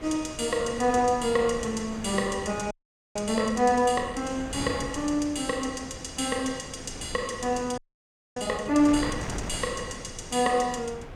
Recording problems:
wind noise; below 830 Hz, SNR 12 dB
audio freezing; at 2.5 s and at 8 s for 0.5 s

